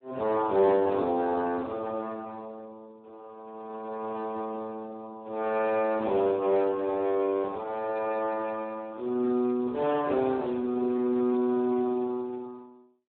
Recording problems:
telephone audio; 300 Hz to 2.8 kHz, Speex

